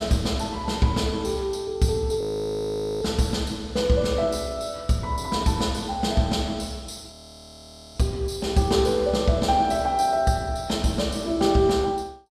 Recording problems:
frozen audio; at 2 s for 1 s and at 7 s for 1 s

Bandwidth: 15.5 kHz